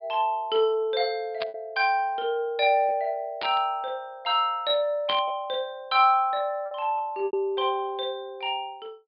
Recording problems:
treble cut off; nothing above 4.9 kHz
packet loss; 3% of the sound replaced, filled with repeated pitch periods
static burst; at 1.5 s, at 3.5 s and at 5 s; peak -3 dB vs average level

